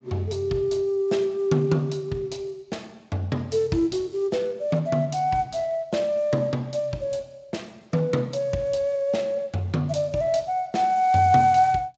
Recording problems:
codec artefacts; Speex, log-spectral distance 3 dB, nothing above 7.6 kHz

